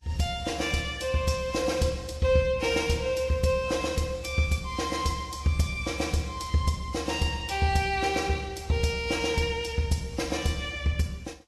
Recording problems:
lossy compression; Vorbis, log-spectral distance 4 dB, nothing above 13.5 kHz

